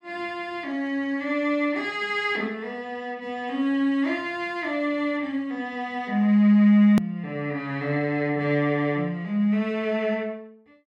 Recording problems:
edit click; at 7 s

